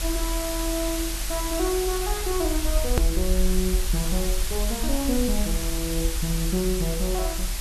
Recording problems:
hum; 50 Hz, harmonics up to 350 Hz, SNR 18 dB
hiss; slope +1 dB per octave, SNR 2 dB
low-frequency rumble; below 50 Hz, strongest tone 40 Hz, SNR 2 dB
edit click; at 3 s

